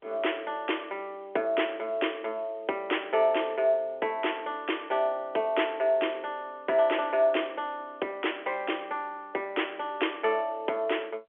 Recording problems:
telephone audio; 280 Hz to 3.4 kHz, G.711

